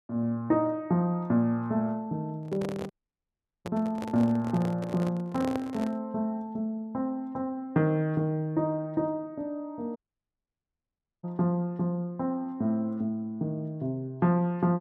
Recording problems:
handling noise; from 2.5 to 6 s; peak -2 dB vs average level
audio cutting out; at 3 s for 1 s and at 10 s for 1.5 s

